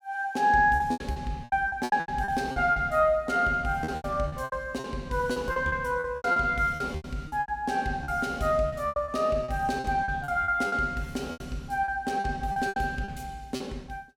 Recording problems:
lost packets; 15% of the sound replaced, filled with repeated pitch periods

